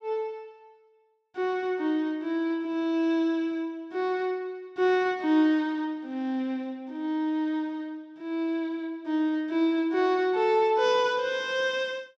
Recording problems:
none

